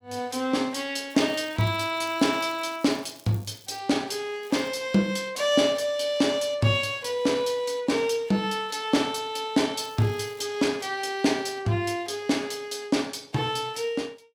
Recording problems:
crackle; from 1 to 4 s, at 4.5 s and at 10 s; loose cable, SNR 24 dB

